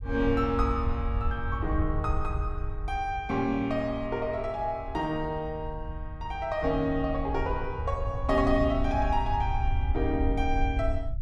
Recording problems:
rumble; below 78 Hz, SNR 4 dB

